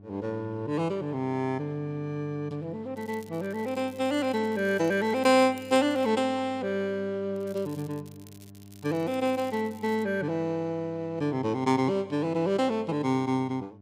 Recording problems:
hum; 50 Hz, harmonics up to 800 Hz, SNR 21 dB
crackle; from 3 to 6 s and from 7.5 to 10 s; loose cable, SNR 26 dB

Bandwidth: 15.5 kHz